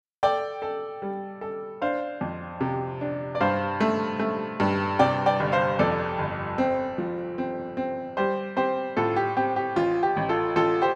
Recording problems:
none

